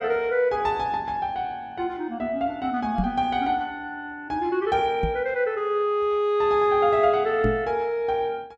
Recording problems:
microphone bump; at 3 s, at 5 s and at 7.5 s; peak +2 dB vs average level

